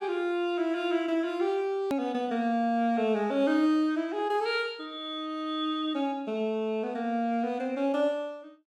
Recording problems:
click at an edit; at 2 s

